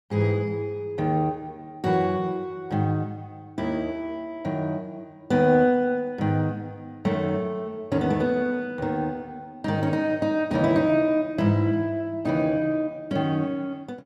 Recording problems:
none

